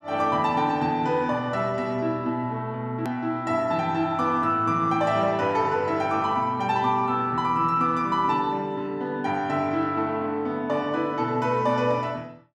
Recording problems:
click at an edit; at 3 s

